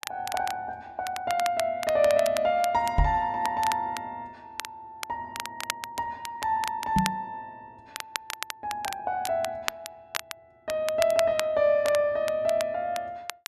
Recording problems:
crackling; vinyl, SNR 10 dB
knock on the microphone; at 3 s and at 7 s; peak +6 dB vs average level

